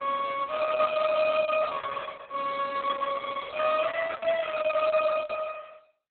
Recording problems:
lossy compression; Opus, log-spectral distance 4 dB, nothing above 3.8 kHz

